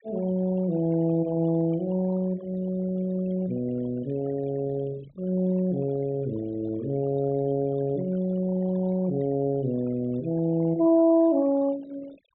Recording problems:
low-pass filter; nothing above 3.8 kHz
noise reduction artefacts; signal-to-artefact ratio 21 dB

